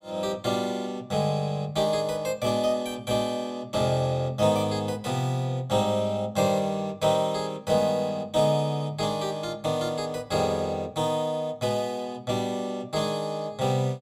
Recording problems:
none

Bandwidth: 15.5 kHz